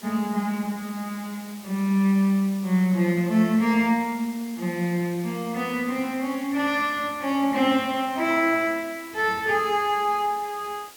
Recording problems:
background hiss; slope -1 dB per octave, SNR 20 dB

